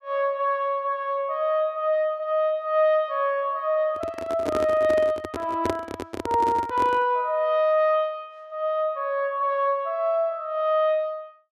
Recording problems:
handling noise; from 4 to 7 s; peak +1 dB vs average level

